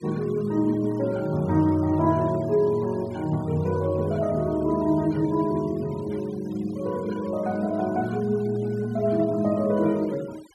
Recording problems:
denoising artefacts; signal-to-artefact ratio 24 dB

